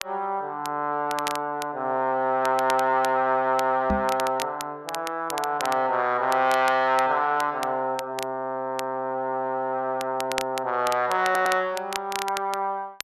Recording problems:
crackle; vinyl, SNR 13 dB
microphone bump; at 4 s; peak +1 dB vs average level
audio stuttering; at 11 s

